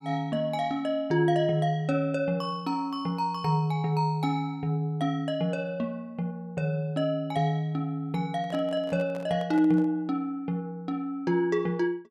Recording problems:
handling noise; from 8.5 to 10 s; peak -10 dB vs average level

